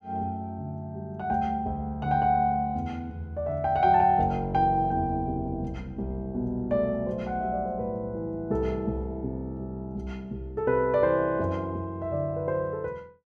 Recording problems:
none

